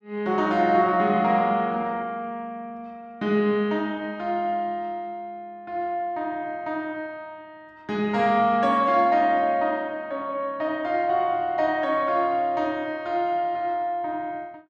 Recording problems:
none

